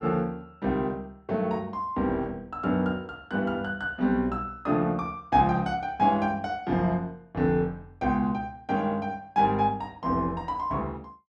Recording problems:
none

